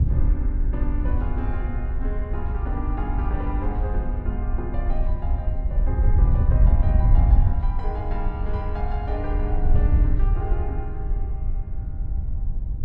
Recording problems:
wind on the microphone; below 70 Hz, SNR -10 dB

